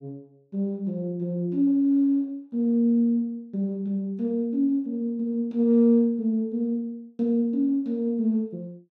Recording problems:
none

